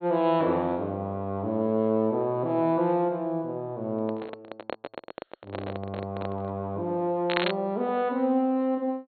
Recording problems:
treble cut off; nothing above 4.3 kHz
handling noise; from 4 to 6.5 s; peak -3 dB vs average level
crackle; at 7.5 s; loose cable, SNR 4 dB

